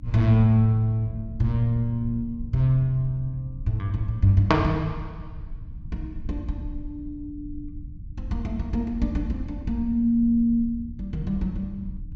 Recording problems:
low-pass filter; nothing above 8 kHz
electrical hum; 60 Hz, harmonics up to 300 Hz, SNR 27 dB
rumble; below 88 Hz, SNR 15 dB

